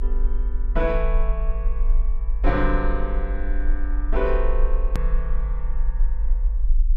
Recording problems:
rumble; below 48 Hz, strongest tone 28 Hz, SNR -3 dB
edit click; at 5 s

